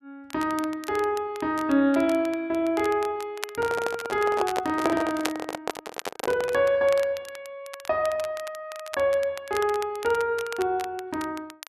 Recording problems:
crackle; vinyl, SNR 15 dB
microphone handling noise; from 3.5 to 6.5 s; peak +3 dB vs average level

